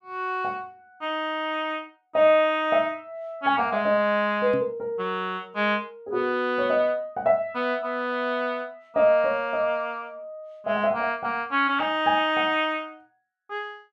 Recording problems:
microphone bump; at 4.5 s; peak -4 dB vs average level

